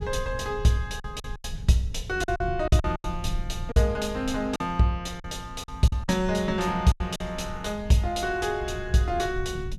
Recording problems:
low-frequency rumble; below 100 Hz, SNR 11 dB
lost packets; 8% of the sound replaced, filled with silence

